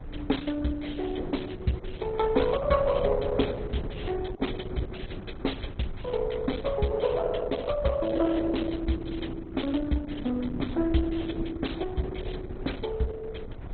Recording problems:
lossy codec; Opus, then MP2, log-spectral distance 5 dB, nothing above 4 kHz
rumble; below 160 Hz, SNR 12 dB

